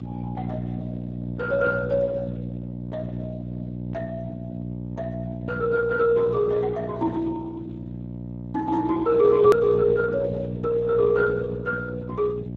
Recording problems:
lossy codec; Speex, log-spectral distance 2 dB, nothing above 13.1 kHz
electrical hum; 60 Hz, harmonics up to 660 Hz, SNR 9 dB
click at an edit; at 9.5 s

